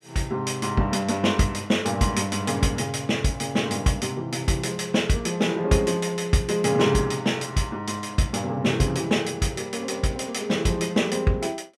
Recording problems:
none

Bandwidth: 13.5 kHz